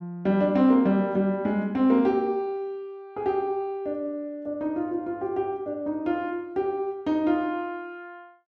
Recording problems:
none

